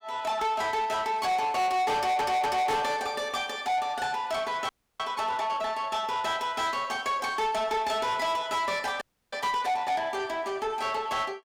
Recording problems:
distorted audio; soft clipping, signal-to-distortion ratio 7 dB
audio stuttering; at 2 s
audio freezing; at 4.5 s and at 9 s

